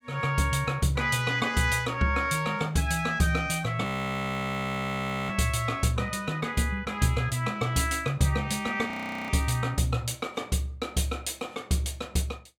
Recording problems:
audio freezing; at 4 s for 1.5 s and at 9 s

